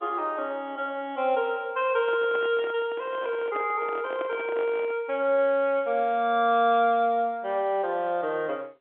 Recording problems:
phone line; 260 Hz to 3.5 kHz, G.711
handling noise; from 2 to 5 s; peak -7 dB vs average level

